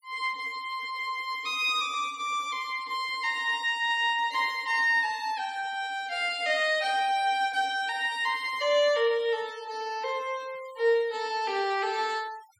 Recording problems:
noise reduction artefacts; signal-to-artefact ratio 23 dB

